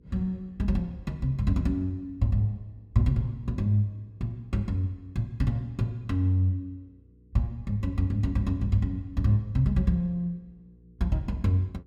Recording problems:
mains hum; 60 Hz, harmonics up to 480 Hz, SNR 29 dB

